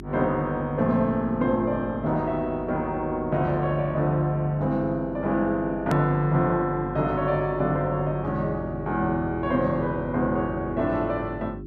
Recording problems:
electrical hum; 50 Hz, harmonics up to 400 Hz, SNR 13 dB
hard cut with a click; at 6 s

